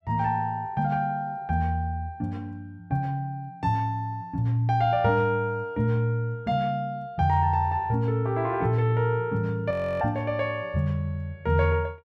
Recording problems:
frozen audio; at 9.5 s

